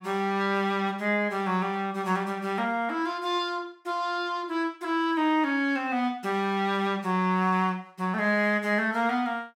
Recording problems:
none

